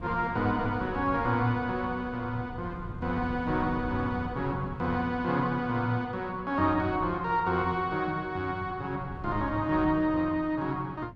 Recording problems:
wind on the microphone; below 170 Hz, SNR 14 dB

